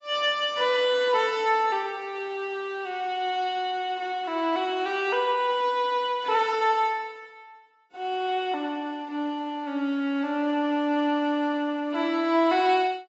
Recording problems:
codec artefacts; AAC, log-spectral distance 2 dB, nothing above 7.3 kHz

